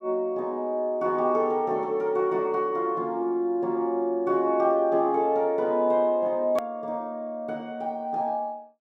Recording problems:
click at an edit; at 6.5 s

